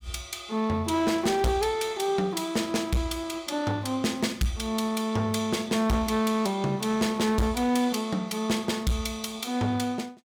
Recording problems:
distortion; hard clipping, uneven, signal-to-distortion ratio 10 dB

